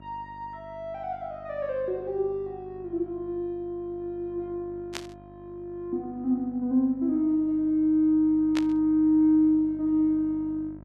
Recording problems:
hum; 50 Hz, harmonics up to 1.4 kHz, SNR 22 dB
static burst; at 5 s and at 8.5 s; peak -4 dB vs average level

